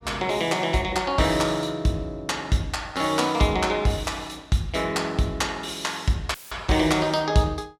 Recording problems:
dropout; at 6.5 s; filled with static

